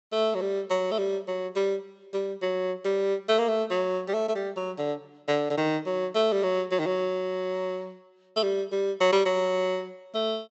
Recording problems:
low-pass filter; nothing above 7.7 kHz

